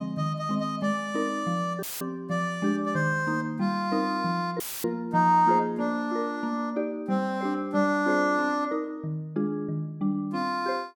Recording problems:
dropout; at 2 s and at 4.5 s; filled with static

